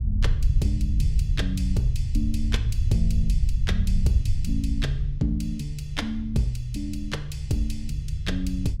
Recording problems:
rumble; below 82 Hz, SNR -2 dB

